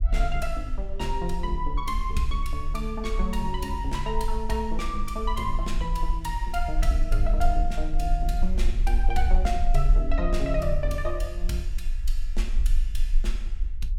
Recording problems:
rumble; below 40 Hz, strongest tone 20 Hz, SNR -1 dB

